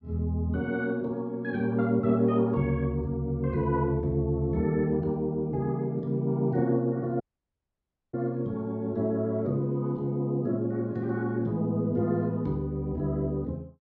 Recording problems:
dropout; at 7 s for 1 s

